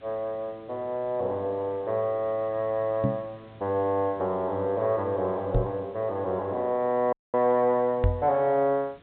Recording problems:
treble cut off; nothing above 4 kHz
background hiss; SNR 28 dB
microphone thump; at 3 s, at 5.5 s and at 8 s; peak +6 dB vs average level
audio cutting out; at 7 s

